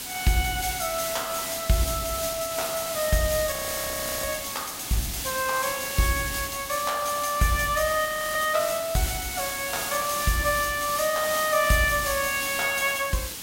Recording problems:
hiss; SNR 5 dB
audio freezing; at 3.5 s for 0.5 s and at 8 s

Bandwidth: 16 kHz